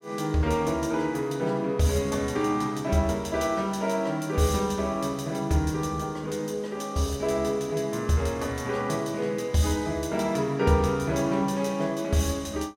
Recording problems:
none

